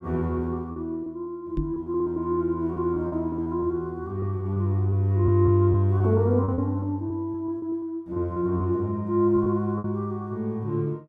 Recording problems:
lost packets; 8% of the sound replaced, filled with repeated pitch periods
microphone bump; at 1.5 s; peak 0 dB vs average level

